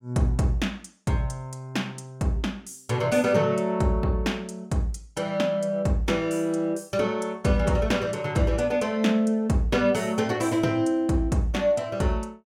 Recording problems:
none

